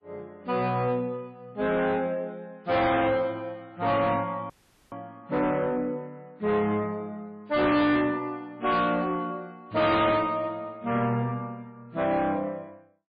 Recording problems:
lossy codec; MP3, log-spectral distance 2 dB, nothing above 4.1 kHz
distorted audio; soft clipping, signal-to-distortion ratio 8 dB
audio cutting out; at 4.5 s

